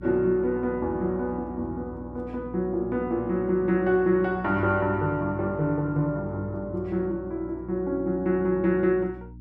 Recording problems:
hum; 60 Hz, harmonics up to 300 Hz, SNR 18 dB

